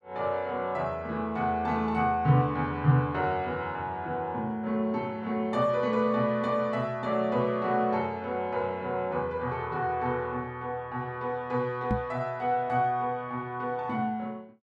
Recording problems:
microphone bump; at 12 s; peak +4 dB vs average level

